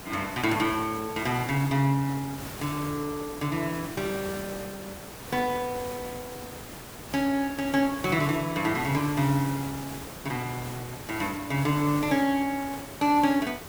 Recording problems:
hiss; slope -4 dB per octave, SNR 11 dB

